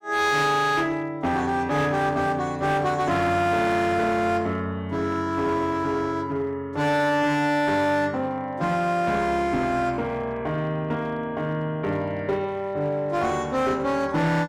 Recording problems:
distortion; hard clipping, uneven, signal-to-distortion ratio 11 dB

